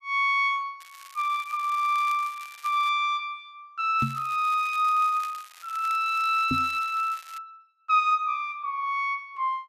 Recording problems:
crackle; from 1 to 3 s and from 4 to 7.5 s; loose cable, SNR 22 dB
knock on the microphone; at 4 s and at 6.5 s; peak +1 dB vs average level

